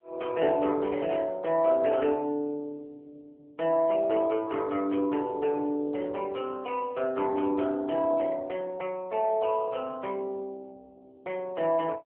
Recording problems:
telephone audio; 220 Hz to 3.3 kHz, AMR-NB

